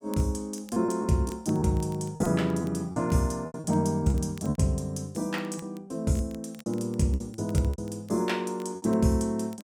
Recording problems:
crackle; vinyl, SNR 27 dB
packet loss; 9% of the sound replaced, filled with repeated pitch periods

